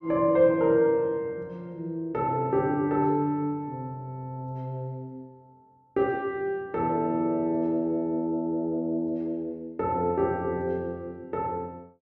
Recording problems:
none

